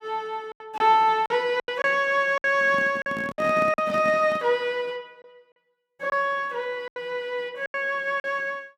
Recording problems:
packet loss; 9% of the sound replaced, filled with silence
handling noise; from 2.5 to 4.5 s; peak -6 dB vs average level

